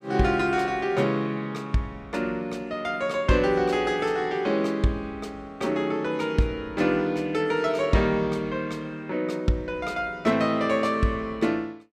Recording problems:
none

